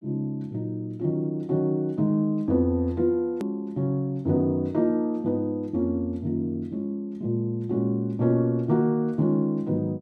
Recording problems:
edit click; at 3.5 s

